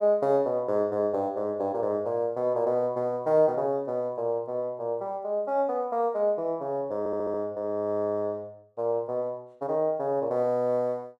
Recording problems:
audio stuttering; at 7 s

